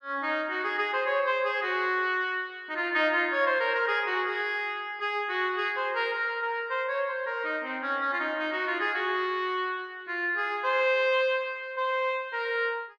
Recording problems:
none

